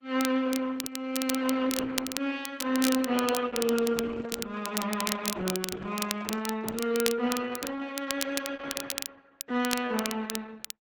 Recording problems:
lossy codec; Opus, log-spectral distance 4 dB
crackle; vinyl, SNR 5 dB
microphone handling noise; from 3.5 to 7 s; peak -10 dB vs average level

